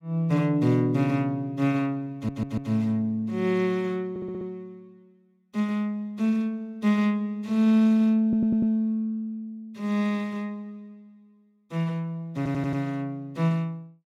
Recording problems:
stutter; 4 times, first at 2 s

